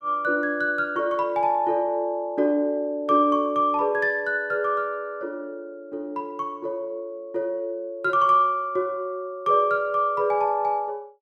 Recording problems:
none

